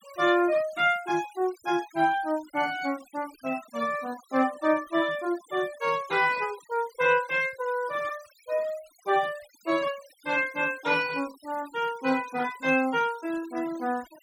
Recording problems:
denoising artefacts; signal-to-artefact ratio 20 dB

